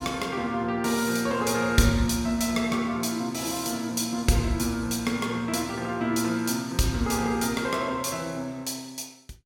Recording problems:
none

